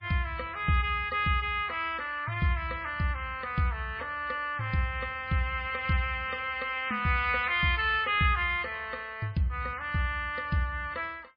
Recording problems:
codec artefacts; MP3, log-spectral distance 2 dB, nothing above 4.4 kHz

